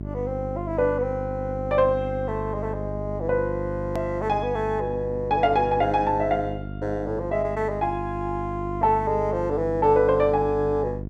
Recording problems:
electrical hum; 50 Hz, harmonics up to 700 Hz, SNR 9 dB
click at an edit; at 4 s

